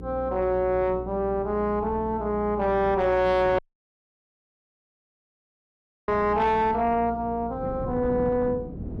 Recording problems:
distorted audio; soft clipping, signal-to-distortion ratio 11 dB
electrical hum; 60 Hz, harmonics up to 480 Hz, SNR 15 dB
wind noise; below 290 Hz, SNR 16 dB
dropout; at 3.5 s for 2.5 s

